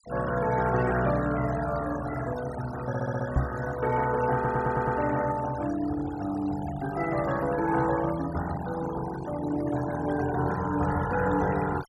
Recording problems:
noise reduction artefacts; signal-to-artefact ratio 14 dB
stutter; at 3 s and at 4.5 s
knock on the microphone; at 3.5 s; peak +5 dB vs average level

